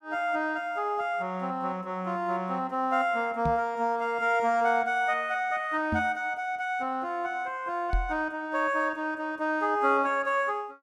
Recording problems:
knock on the microphone; at 3.5 s, at 6 s and at 8 s; peak +2 dB vs average level

